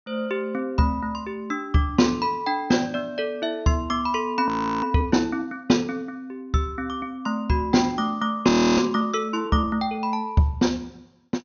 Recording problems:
treble cut off; nothing above 6.4 kHz
audio freezing; at 4.5 s and at 8.5 s

